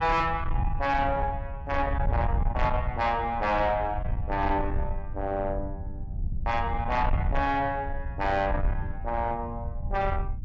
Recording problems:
treble missing; nothing above 8 kHz
distorted audio; soft clipping, signal-to-distortion ratio 11 dB
low-frequency rumble; below 88 Hz, SNR 4 dB

